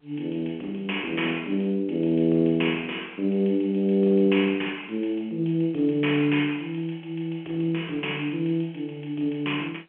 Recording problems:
phone line; 260 Hz to 3.2 kHz, G.711

